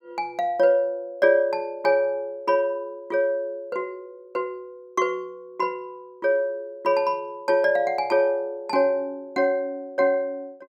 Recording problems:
none

